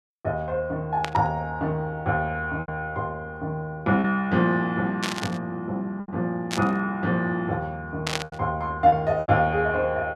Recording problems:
lost packets; 4% of the sound replaced, filled with repeated pitch periods
burst of static; 4 times, first at 1 s; peak +3 dB vs average level

